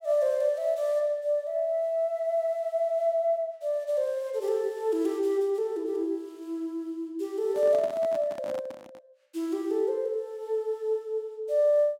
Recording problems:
microphone handling noise; from 7.5 to 9 s; peak -10 dB vs average level

